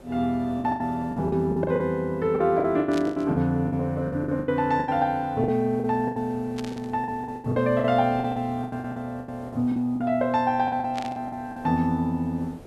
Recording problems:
background hiss; slope -8 dB per octave, SNR 22 dB
packet loss; 16% of the sound replaced, filled with the last packet
burst of static; at 3 s, at 6.5 s and at 11 s; peak -7 dB vs average level

